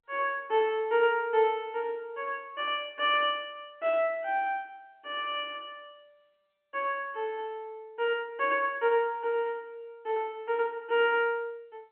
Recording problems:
phone line; 260 Hz to 3.1 kHz, G.711

